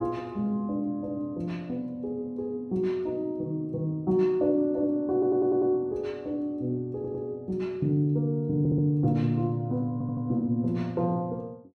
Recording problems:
audio stuttering; 4 times, first at 5 s

